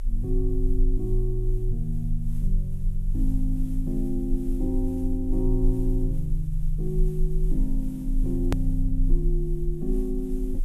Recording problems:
background hiss; slope -4 dB per octave, SNR 27 dB
rumble; below 32 Hz, strongest tone 28 Hz, SNR 1 dB
hard cut with a click; at 8.5 s

